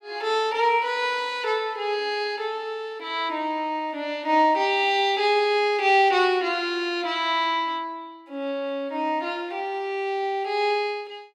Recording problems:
none

